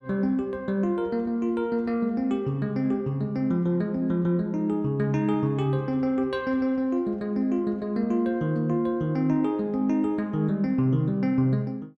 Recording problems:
none

